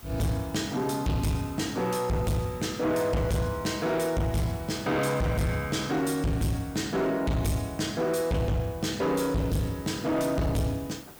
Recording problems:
distorted audio; soft clipping, signal-to-distortion ratio 7 dB
background hiss; slope -4 dB per octave, SNR 21 dB

